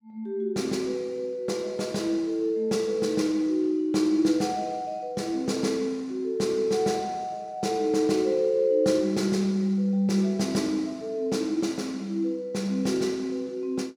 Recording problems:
none

